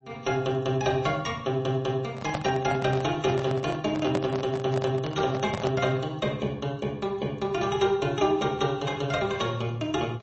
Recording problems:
lossy codec; MP3, log-spectral distance 2 dB
handling noise; from 2 to 6 s; peak +1 dB vs average level

